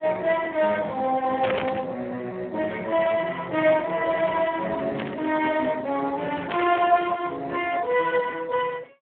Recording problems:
telephone audio; 280 Hz to 2.9 kHz, Speex
burst of static; at 1.5 s, at 5 s and at 6.5 s; peak +1 dB vs average level

